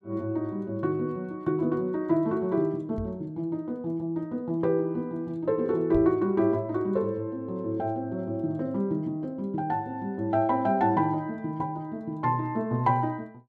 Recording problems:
microphone thump; at 3 s and at 6 s; peak -5 dB vs average level

